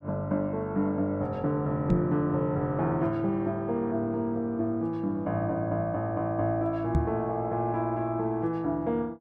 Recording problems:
microphone thump; at 2 s and at 7 s; peak +6 dB vs average level

